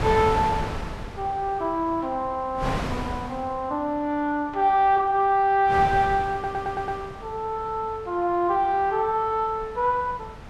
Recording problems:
wind noise; below 1 kHz, SNR 10 dB
stutter; at 6.5 s

